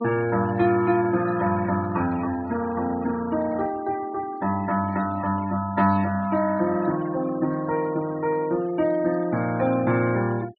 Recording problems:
low-pass filter; nothing above 4.6 kHz
denoising artefacts; signal-to-artefact ratio 19 dB

